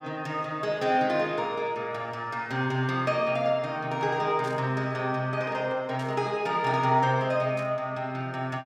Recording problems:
burst of static; at 4.5 s, at 6 s and at 7.5 s; peak -14 dB vs average level

